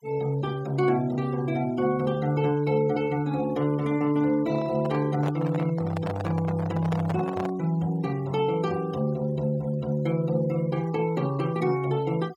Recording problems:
noise reduction artefacts; signal-to-artefact ratio 21 dB
handling noise; from 4.5 to 7.5 s; peak -3 dB vs average level

